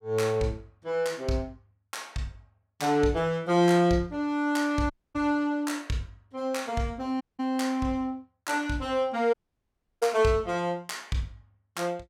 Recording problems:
audio cutting out; at 5 s, at 7 s and at 9.5 s for 0.5 s

